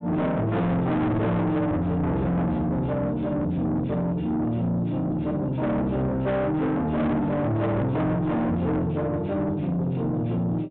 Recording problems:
low-pass filter; nothing above 4 kHz
distortion; soft clipping, signal-to-distortion ratio 7 dB

